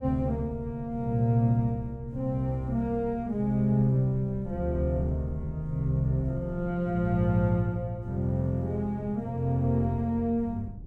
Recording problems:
low-frequency rumble; below 120 Hz, SNR 18 dB

